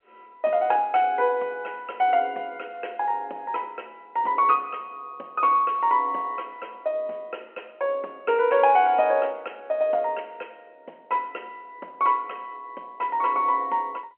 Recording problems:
phone line; 260 Hz to 3.2 kHz, G.711

